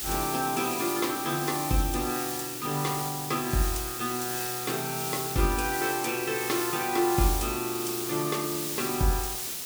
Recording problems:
background hiss; SNR 3 dB

